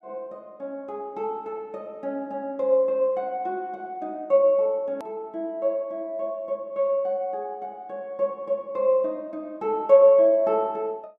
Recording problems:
hard cut with a click; at 5 s

